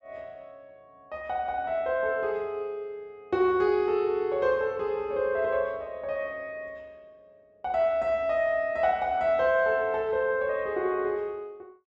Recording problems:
treble missing; nothing above 7.9 kHz

